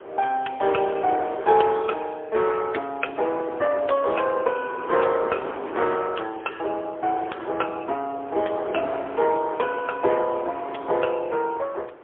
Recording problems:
telephone audio; 320 Hz to 3.4 kHz, AMR-NB, then MP3
wind noise; below 970 Hz, SNR 12 dB

